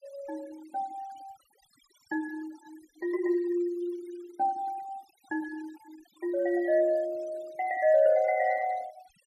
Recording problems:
denoising artefacts; signal-to-artefact ratio 23 dB

